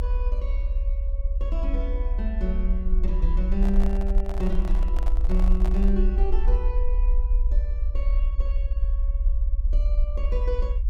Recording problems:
rumble; below 52 Hz, strongest tone 34 Hz, SNR -7 dB
microphone handling noise; from 3.5 to 6 s; peak -1 dB vs average level

